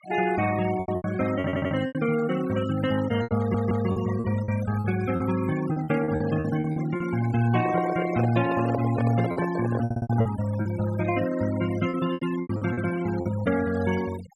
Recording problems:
noise reduction artefacts; signal-to-artefact ratio 13 dB
packet loss; 10% of the sound replaced, filled with repeated pitch periods
audio stuttering; at 1.5 s, at 3.5 s and at 10 s
handling noise; from 7.5 to 10 s; peak 0 dB vs average level

